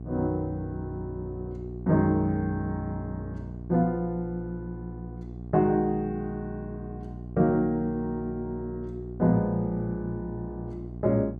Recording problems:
hum; 60 Hz, harmonics up to 780 Hz, SNR 10 dB

